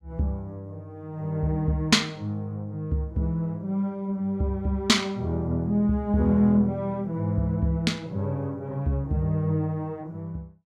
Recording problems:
none

